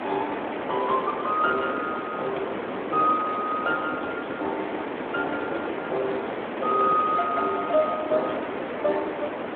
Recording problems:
telephone audio; 300 Hz to 3.6 kHz, Speex
background hiss; SNR 4 dB
crackling; at 6.5 s; loose cable, SNR 27 dB

